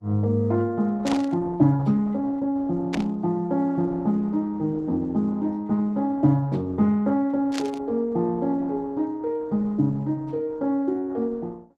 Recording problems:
codec artefacts; Opus, log-spectral distance 2 dB
burst of static; at 1 s, at 3 s and at 7.5 s; peak -3 dB vs average level

